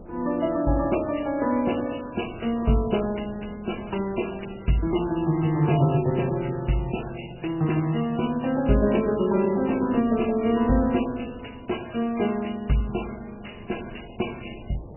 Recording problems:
lossy codec; MP3, log-spectral distance 9 dB, nothing above 2.9 kHz
wind noise; below 410 Hz, SNR 21 dB

